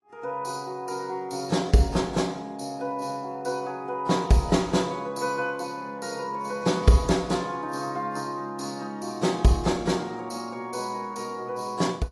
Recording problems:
codec artefacts; AAC, log-spectral distance 3 dB, nothing above 11.3 kHz

